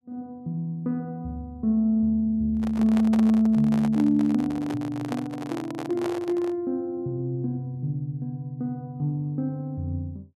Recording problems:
handling noise; from 2.5 to 6.5 s; peak -3 dB vs average level

